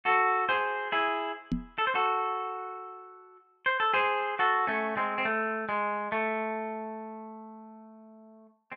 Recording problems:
microphone bump; at 1.5 s; peak +2 dB vs average level

